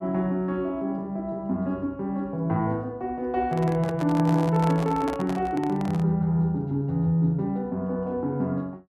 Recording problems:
handling noise; from 3.5 to 6 s; peak -4 dB vs average level

